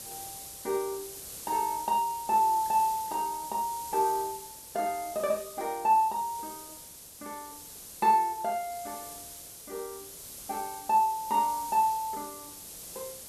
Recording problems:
hiss; SNR 13 dB

